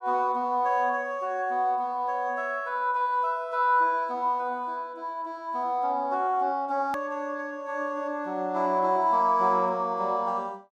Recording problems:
click at an edit; at 7 s

